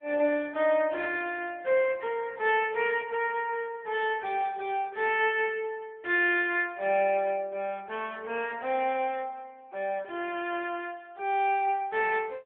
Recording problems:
telephone audio; 300 Hz to 3.4 kHz, AMR-NB

